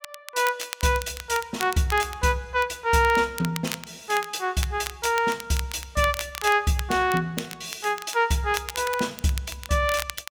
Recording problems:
crackling; vinyl, SNR 12 dB

